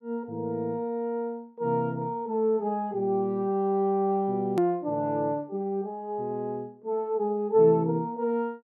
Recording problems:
hard cut with a click; at 4.5 s

